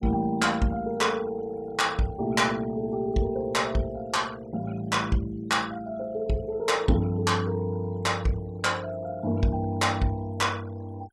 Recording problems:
denoising artefacts; signal-to-artefact ratio 23 dB

